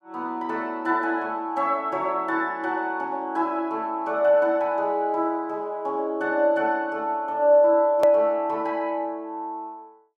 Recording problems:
edit click; at 8 s

